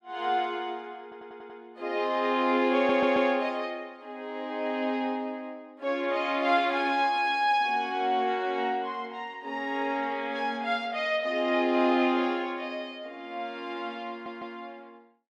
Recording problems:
stutter; at 1 s, at 3 s and at 14 s

